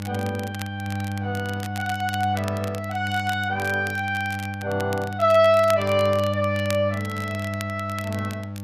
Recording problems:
hum; 50 Hz, harmonics up to 900 Hz, SNR 7 dB
crackle; vinyl, SNR 16 dB

